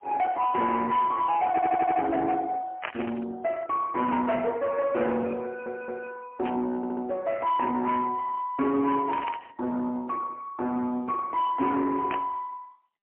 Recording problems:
phone line; 240 Hz to 3.4 kHz, AMR-NB, then MP3
distortion; soft clipping, signal-to-distortion ratio 11 dB
stutter; at 1.5 s, at 5.5 s and at 7 s
static burst; 4 times, first at 3 s; peak -1 dB vs average level

